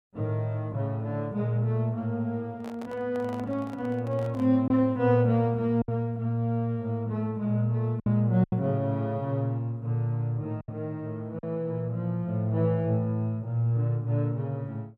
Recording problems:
packet loss; 2% of the sound replaced, filled with silence
microphone handling noise; from 2.5 to 4.5 s; peak -11 dB vs average level

